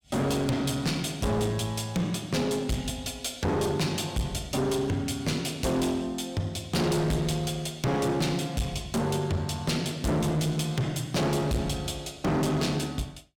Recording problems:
distorted audio; hard clipping, uneven, signal-to-distortion ratio 5 dB

